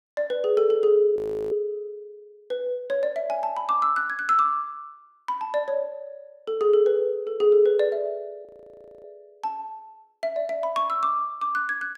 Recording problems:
frozen audio; at 1 s and at 8.5 s for 0.5 s

